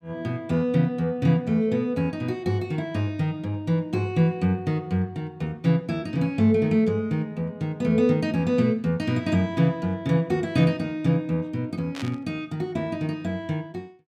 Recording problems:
burst of static; at 12 s; peak -8 dB vs average level

